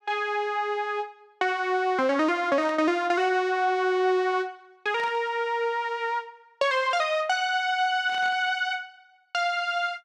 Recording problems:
burst of static; at 2.5 s, at 5 s and at 8 s; peak -13 dB vs average level

